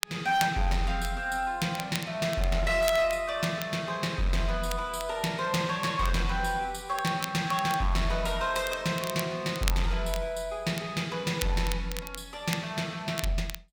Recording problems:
distorted audio; hard clipping, signal-to-distortion ratio 12 dB
crackling; vinyl, SNR 11 dB

